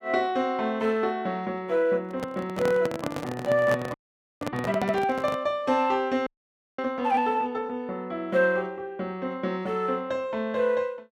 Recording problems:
microphone handling noise; from 2 to 5.5 s; peak 0 dB vs average level
audio freezing; at 4 s and at 6.5 s for 0.5 s

